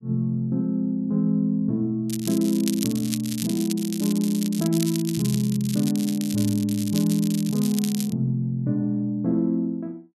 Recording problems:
crackling; from 2 to 8 s; loose cable, SNR 10 dB

